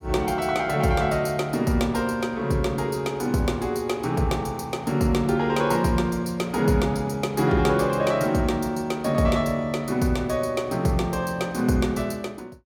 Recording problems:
none

